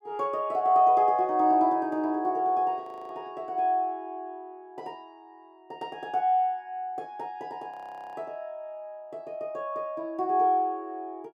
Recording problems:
audio freezing; at 3 s and at 7.5 s

